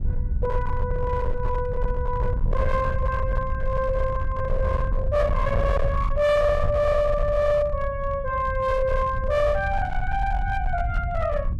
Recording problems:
distortion; hard clipping, signal-to-distortion ratio 10 dB
low-frequency rumble; below 88 Hz, SNR 3 dB

